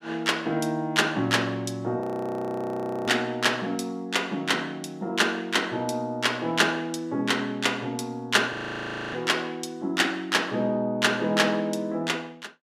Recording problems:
frozen audio; at 2 s for 1 s and at 8.5 s for 0.5 s

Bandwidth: 15.5 kHz